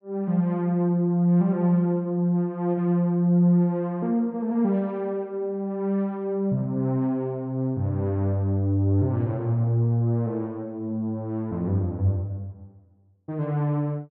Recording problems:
none

